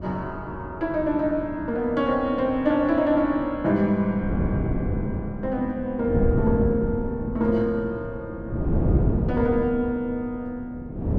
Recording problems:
wind on the microphone; below 260 Hz, SNR 4 dB

